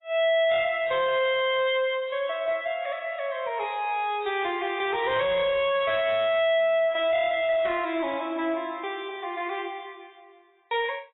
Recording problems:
codec artefacts; AAC, log-spectral distance 3 dB, nothing above 3.4 kHz
distortion; hard clipping, signal-to-distortion ratio 10 dB

